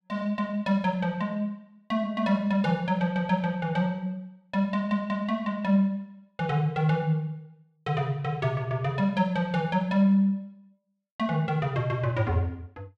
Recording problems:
none

